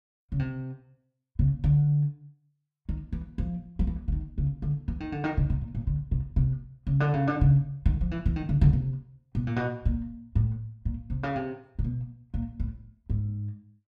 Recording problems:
none

